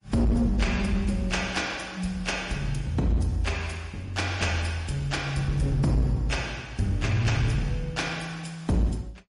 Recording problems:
codec artefacts; MP3, then AAC, log-spectral distance 3 dB, nothing above 10.4 kHz
distorted audio; soft clipping, signal-to-distortion ratio 10 dB

